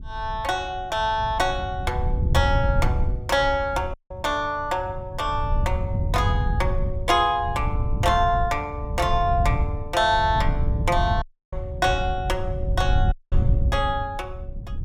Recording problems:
wind on the microphone; below 100 Hz, SNR 3 dB
dropout; at 4 s, at 11 s and at 13 s

